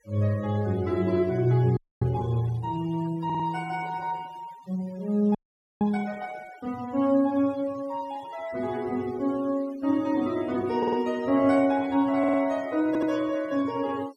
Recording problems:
denoising artefacts; signal-to-artefact ratio 22 dB
frozen audio; at 2 s and at 5.5 s
stutter; 4 times, first at 3.5 s

